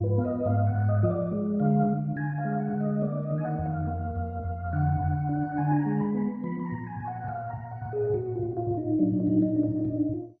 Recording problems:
codec artefacts; MP2, log-spectral distance 2 dB

